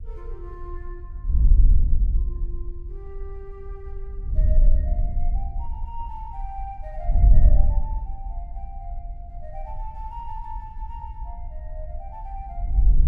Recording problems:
wind noise; below 54 Hz, SNR -17 dB

